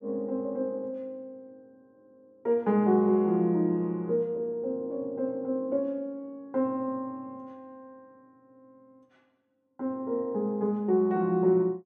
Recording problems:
none

